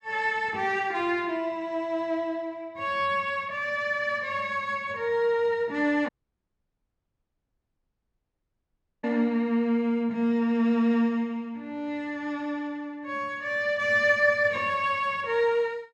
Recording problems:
audio cutting out; at 6 s for 3 s

